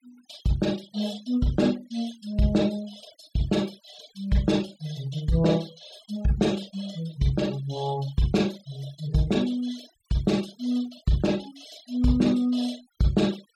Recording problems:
noise reduction artefacts; signal-to-artefact ratio 20 dB

